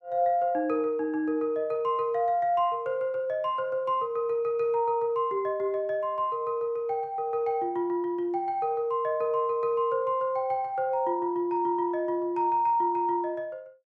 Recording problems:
none

